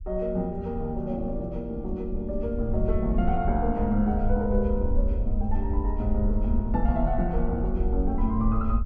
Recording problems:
rumble; below 60 Hz, SNR 2 dB

